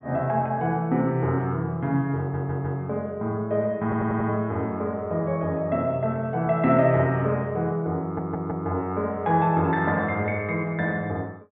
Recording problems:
treble missing; nothing above 4 kHz
stutter; at 2 s, at 4 s and at 8 s

